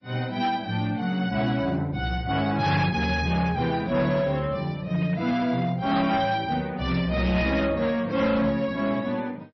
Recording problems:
lossy compression; MP3, log-spectral distance 2 dB, nothing above 5.8 kHz
distortion; hard clipping, signal-to-distortion ratio 12 dB

